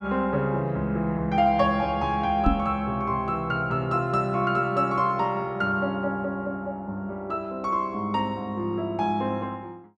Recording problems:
microphone thump; at 2.5 s; peak +7 dB vs average level

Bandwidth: 11.5 kHz